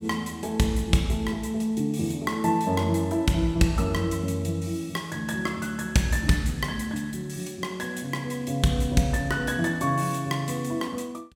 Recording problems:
none

